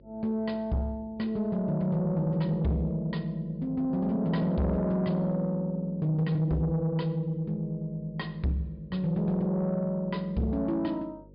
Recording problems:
low-pass filter; nothing above 5.1 kHz
distorted audio; soft clipping, signal-to-distortion ratio 11 dB
hum; 50 Hz, harmonics up to 550 Hz, SNR 25 dB

